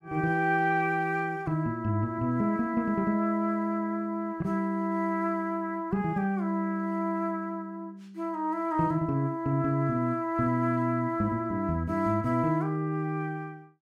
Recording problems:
none

